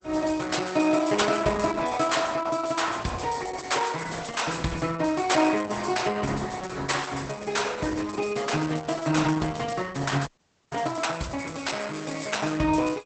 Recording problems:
codec artefacts; Opus, log-spectral distance 7 dB, nothing above 8.2 kHz
frozen audio; at 10 s

